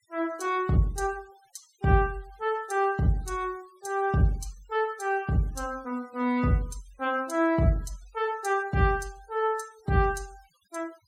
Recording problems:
denoising artefacts; signal-to-artefact ratio 27 dB

